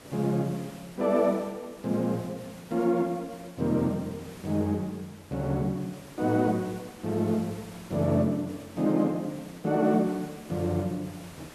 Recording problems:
hiss; slope -4 dB per octave, SNR 20 dB

